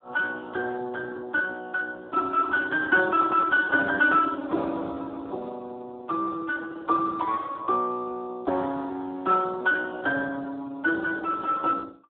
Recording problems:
phone line; 220 Hz to 3 kHz, Speex

